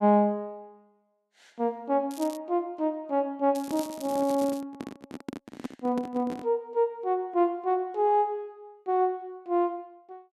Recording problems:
crackle; at 2 s and from 3.5 to 4.5 s; loose cable, SNR 18 dB
handling noise; from 3.5 to 6.5 s; peak -2 dB vs average level

